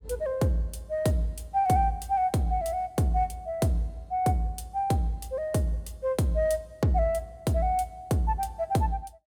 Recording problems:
none

